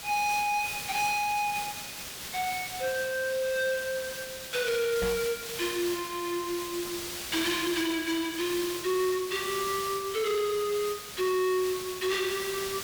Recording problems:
distorted audio; hard clipping, signal-to-distortion ratio 11 dB
background hiss; slope 0 dB per octave, SNR 7 dB
microphone thump; at 5 s; peak -1 dB vs average level

